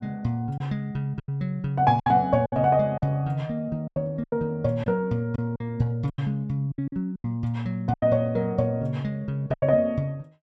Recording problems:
packet loss; 9% of the sound replaced, filled with silence

